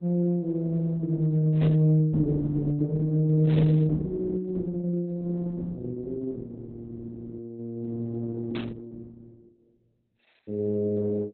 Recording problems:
codec artefacts; AAC, then Opus, log-spectral distance 2 dB
burst of static; at 1.5 s, at 3.5 s and at 8.5 s; peak -12 dB vs average level

